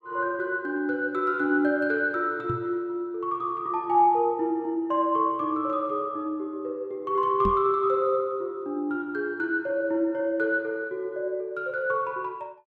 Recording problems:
microphone bump; at 2.5 s and at 7.5 s; peak 0 dB vs average level

